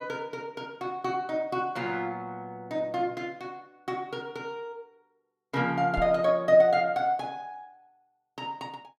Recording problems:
microphone bump; at 6 s; peak -2 dB vs average level

